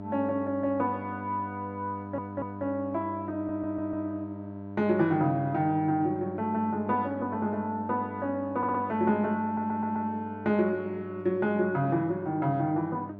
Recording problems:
hum; 50 Hz, harmonics up to 1.3 kHz, SNR 11 dB
stutter; 4 times, first at 2 s

